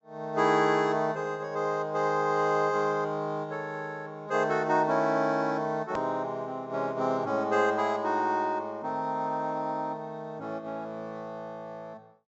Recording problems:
low-pass filter; nothing above 7.7 kHz
click at an edit; at 6 s

